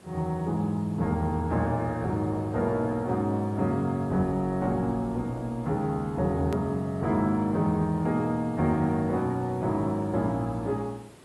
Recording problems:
lossy codec; AAC, log-spectral distance 2 dB, nothing above 13.1 kHz
hiss; slope -6 dB per octave, SNR 24 dB
click at an edit; at 6.5 s

